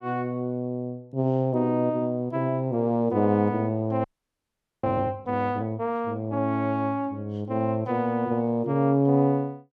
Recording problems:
audio freezing; at 4 s for 1 s

